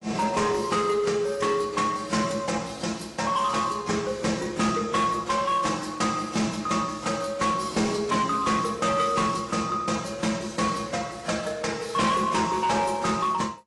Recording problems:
lossy compression; AAC, log-spectral distance 4 dB, nothing above 10.7 kHz
distorted audio; hard clipping, signal-to-distortion ratio 10 dB

